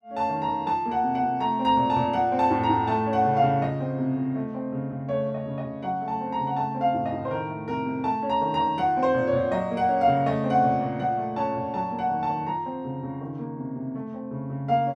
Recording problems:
none

